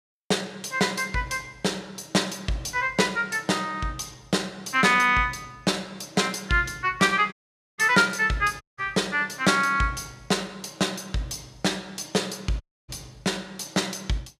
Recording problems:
audio cutting out; at 7.5 s, at 8.5 s and at 13 s

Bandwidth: 15 kHz